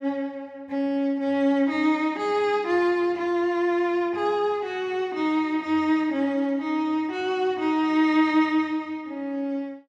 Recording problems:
none

